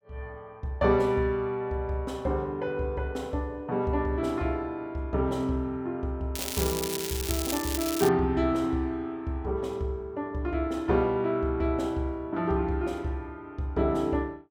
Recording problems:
crackling; from 6.5 to 8 s; loose cable, SNR 4 dB

